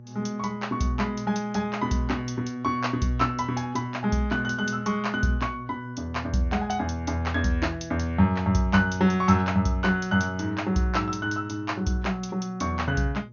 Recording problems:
lossy codec; MP2, log-spectral distance 2 dB, nothing above 6.5 kHz
electrical hum; 60 Hz, harmonics up to 600 Hz, SNR 20 dB

